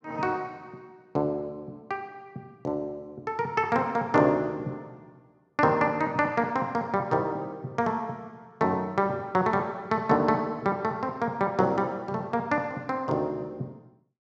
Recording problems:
none

